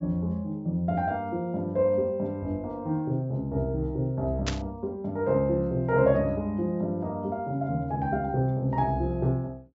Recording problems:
treble missing; nothing above 8 kHz
burst of static; at 4.5 s; peak +1 dB vs average level

